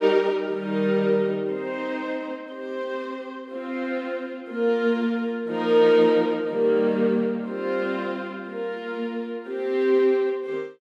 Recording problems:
none

